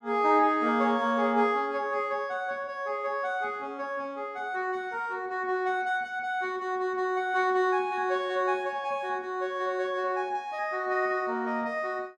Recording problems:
none

